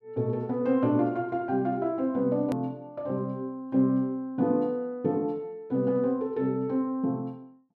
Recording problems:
click at an edit; at 2.5 s

